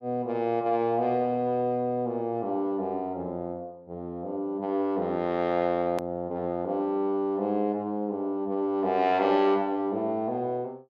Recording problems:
hard cut with a click; at 6 s

